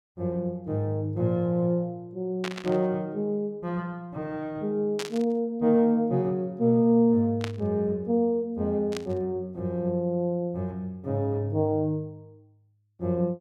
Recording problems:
burst of static; 4 times, first at 2.5 s; peak -3 dB vs average level

